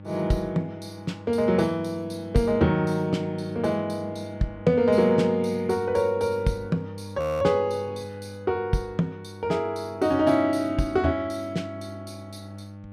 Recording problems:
hum; 50 Hz, harmonics up to 900 Hz, SNR 16 dB
frozen audio; at 7 s

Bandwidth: 14.5 kHz